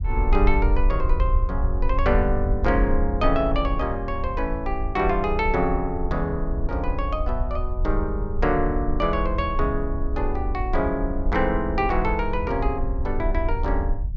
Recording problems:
low-frequency rumble; below 58 Hz, SNR 2 dB

